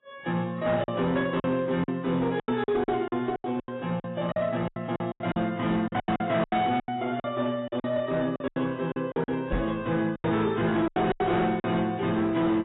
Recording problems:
lossy compression; AAC, log-spectral distance 2 dB, nothing above 3.7 kHz
distorted audio; hard clipping, uneven, signal-to-distortion ratio 12 dB
packet loss; 14% of the sound replaced, filled with silence
microphone thump; at 9.5 s; peak +1 dB vs average level

